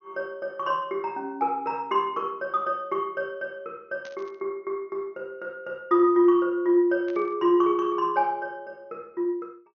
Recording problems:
treble cut off; nothing above 6.5 kHz
static burst; at 4 s and at 7 s; peak -16 dB vs average level

